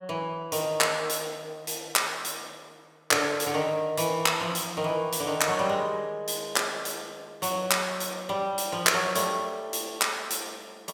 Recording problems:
none

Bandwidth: 17 kHz